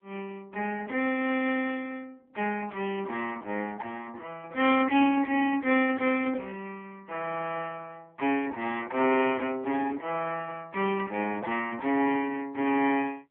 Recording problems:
phone line; 220 Hz to 3.3 kHz, AMR-NB

